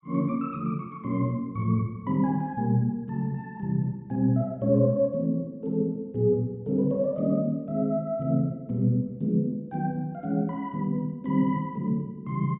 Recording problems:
low-pass filter; nothing above 4 kHz

